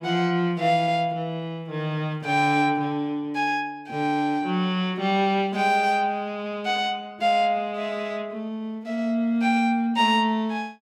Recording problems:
none

